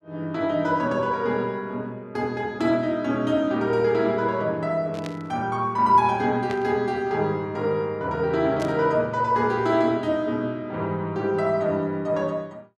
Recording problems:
burst of static; at 5 s, at 6.5 s and at 8.5 s; peak -9 dB vs average level

